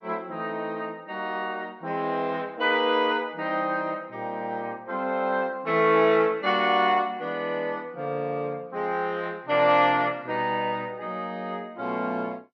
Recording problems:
codec artefacts; MP2, log-spectral distance 2 dB

